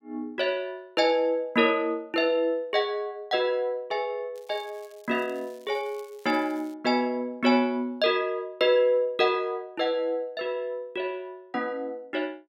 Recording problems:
crackling; from 4.5 to 6.5 s; loose cable, SNR 29 dB

